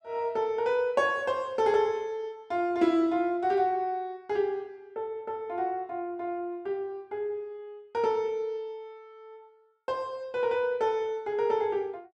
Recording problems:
none

